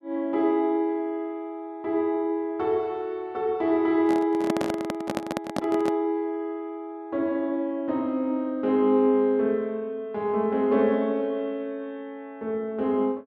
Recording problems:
microphone handling noise; from 4 to 6 s; peak +2 dB vs average level

